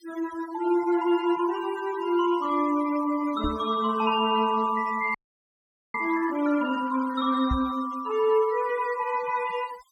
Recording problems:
noise reduction artefacts; signal-to-artefact ratio 18 dB
microphone thump; at 3.5 s and at 7.5 s; peak 0 dB vs average level
frozen audio; at 5 s for 1 s

